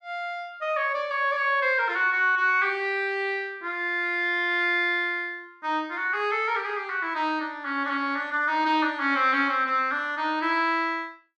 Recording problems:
none

